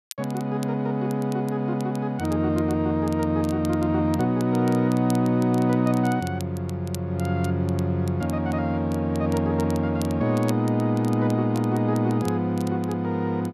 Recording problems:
crackling; vinyl, SNR 22 dB

